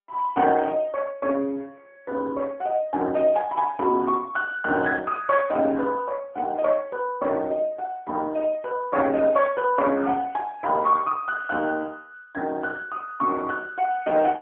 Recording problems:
phone line; 220 Hz to 3 kHz, AMR-NB

